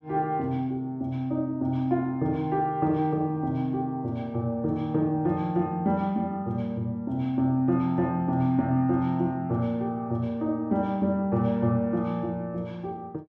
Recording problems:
none

